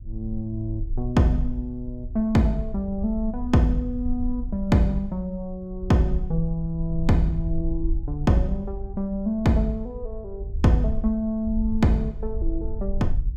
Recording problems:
rumble; below 56 Hz, SNR 8 dB

